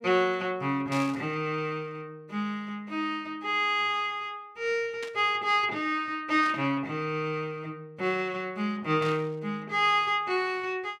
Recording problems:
burst of static; 4 times, first at 1 s; peak -7 dB vs average level

